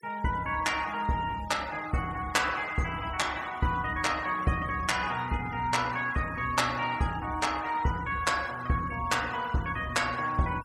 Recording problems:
noise reduction artefacts; signal-to-artefact ratio 18 dB

